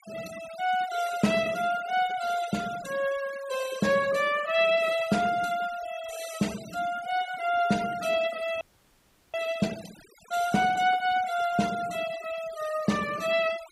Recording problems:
denoising artefacts; signal-to-artefact ratio 16 dB
frozen audio; at 8.5 s for 0.5 s

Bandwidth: 15.5 kHz